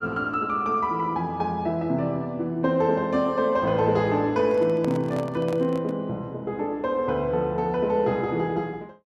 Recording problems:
microphone handling noise; from 4.5 to 6 s; peak -6 dB vs average level

